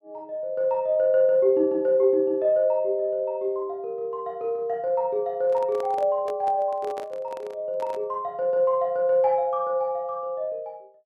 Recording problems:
microphone handling noise; from 5.5 to 8 s; peak -9 dB vs average level

